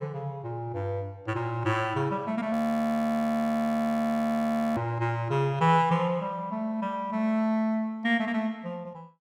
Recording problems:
frozen audio; at 2.5 s for 2 s

